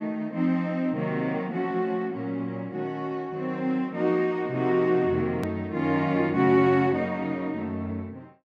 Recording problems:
click at an edit; at 5.5 s

